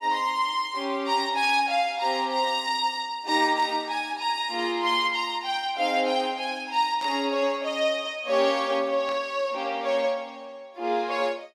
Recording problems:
burst of static; 4 times, first at 1.5 s; peak -12 dB vs average level

